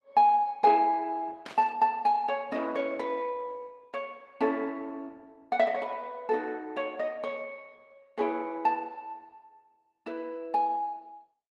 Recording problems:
lossy codec; Opus, log-spectral distance 2 dB, nothing above 11.3 kHz
burst of static; at 1.5 s; peak -8 dB vs average level

